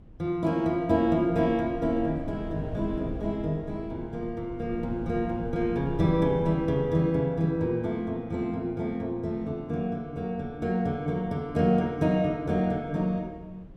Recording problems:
wind noise; below 200 Hz, SNR 15 dB

